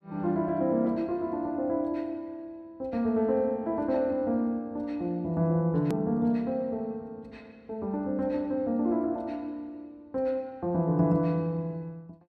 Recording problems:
click at an edit; at 6 s

